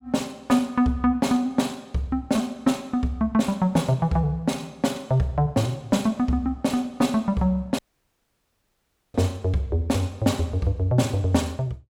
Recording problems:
audio cutting out; at 8 s for 1.5 s

